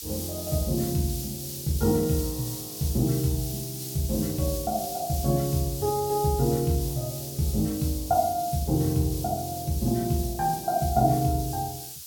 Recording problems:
hiss; SNR 8 dB

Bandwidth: 17 kHz